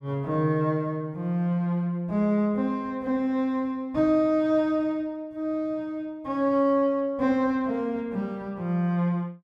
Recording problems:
none

